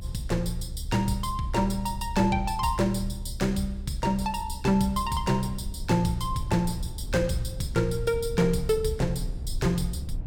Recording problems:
low-frequency rumble; below 70 Hz, strongest tone 34 Hz, SNR 10 dB

